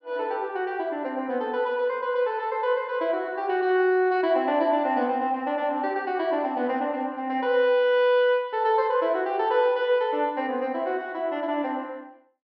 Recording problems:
low-pass filter; nothing above 5.5 kHz

